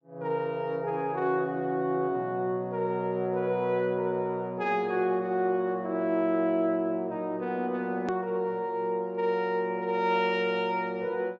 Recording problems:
treble missing; nothing above 8 kHz
hard cut with a click; at 8 s

